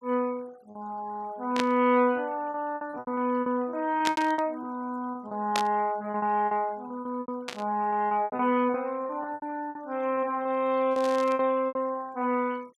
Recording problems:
noise reduction artefacts; signal-to-artefact ratio 26 dB
lost packets; 12% of the sound replaced, filled with repeated pitch periods
burst of static; 5 times, first at 1.5 s; peak +3 dB vs average level

